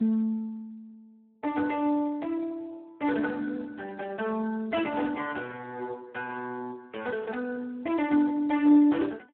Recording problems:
telephone audio; 240 Hz to 3.3 kHz, Speex

